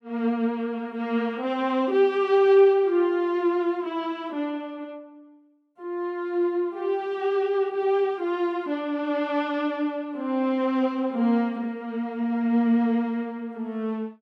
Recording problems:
none

